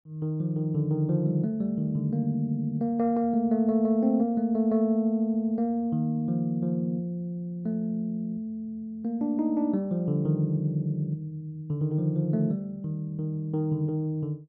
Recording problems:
none

